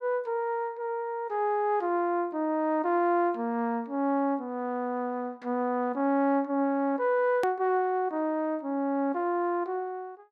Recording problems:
edit click; at 7.5 s

